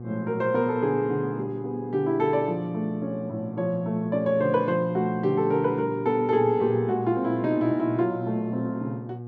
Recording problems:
hum; 60 Hz, harmonics up to 840 Hz, SNR 13 dB

